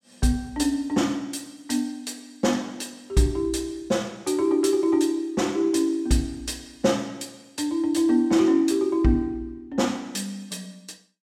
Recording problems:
none

